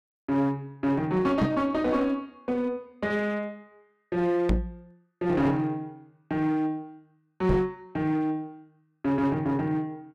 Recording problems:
distorted audio; hard clipping, uneven, signal-to-distortion ratio 11 dB
microphone bump; at 1.5 s, at 4.5 s and at 7.5 s; peak +7 dB vs average level

